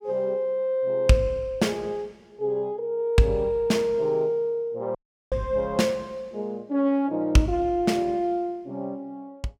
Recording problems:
dropout; at 5 s

